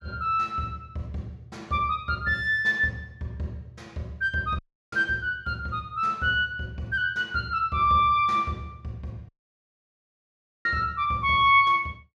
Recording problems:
dropout; at 4.5 s and at 9.5 s for 1.5 s

